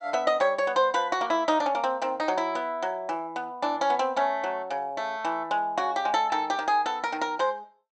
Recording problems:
treble missing; nothing above 8 kHz

